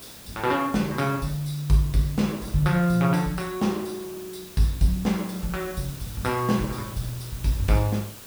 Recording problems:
hiss; slope -2 dB per octave, SNR 16 dB

